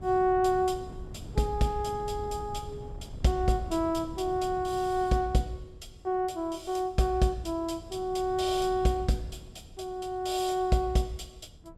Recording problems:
wind noise; below 160 Hz, SNR 16 dB

